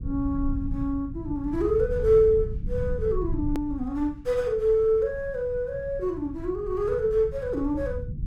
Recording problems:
low-frequency rumble; below 100 Hz, SNR 10 dB
click at an edit; at 3.5 s

